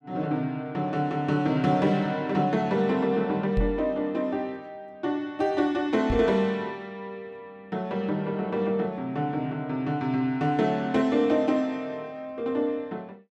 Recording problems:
microphone bump; at 3.5 s and at 6 s; peak +2 dB vs average level

